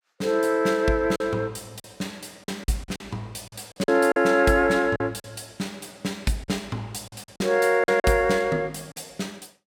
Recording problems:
packet loss; 8% of the sound replaced, filled with silence

